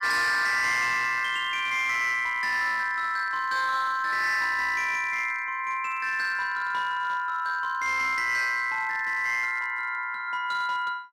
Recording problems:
distortion; hard clipping, signal-to-distortion ratio 12 dB

